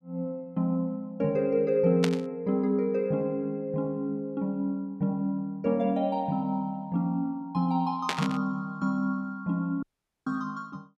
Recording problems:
burst of static; at 2 s and at 8 s; peak +4 dB vs average level
audio cutting out; at 10 s

